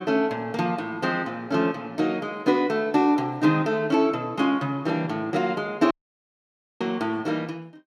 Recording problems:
dropout; at 6 s for 1 s

